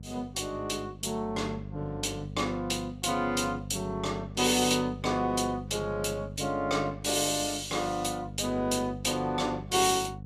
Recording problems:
mains hum; 50 Hz, harmonics up to 500 Hz, SNR 13 dB

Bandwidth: 15 kHz